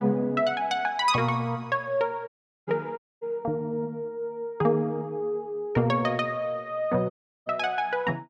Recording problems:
dropout; at 2.5 s, at 3 s and at 7 s

